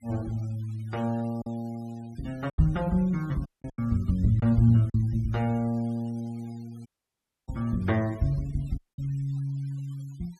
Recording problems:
noise reduction artefacts; signal-to-artefact ratio 26 dB
lost packets; 3% of the sound replaced, filled with silence
dropout; at 3.5 s, at 7 s for 0.5 s and at 9 s

